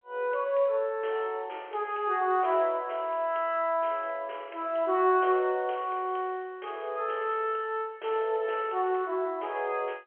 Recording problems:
phone line; 340 Hz to 3.4 kHz, G.711

